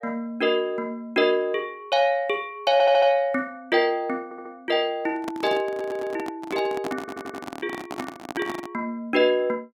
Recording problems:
stutter; 4 times, first at 2.5 s
handling noise; from 5 to 8.5 s; peak -3 dB vs average level

